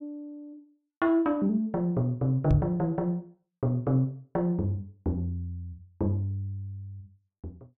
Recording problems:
microphone bump; at 2.5 s; peak +6 dB vs average level

